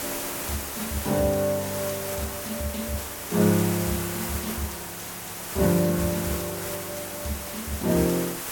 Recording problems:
background hiss; slope -3 dB per octave, SNR 4 dB

